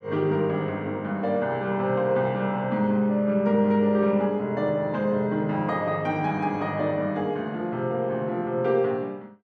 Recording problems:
none

